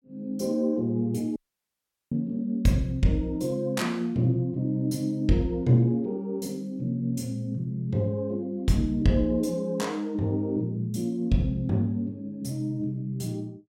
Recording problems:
dropout; at 1.5 s for 0.5 s

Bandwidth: 17 kHz